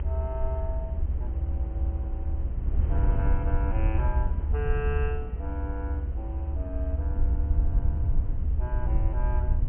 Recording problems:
treble missing; nothing above 3.2 kHz
low-frequency rumble; below 74 Hz, SNR -9 dB
wind noise; below 330 Hz, SNR 5 dB

